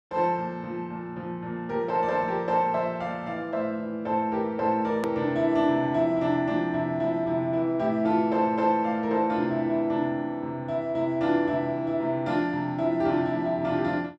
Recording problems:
edit click; at 5 s

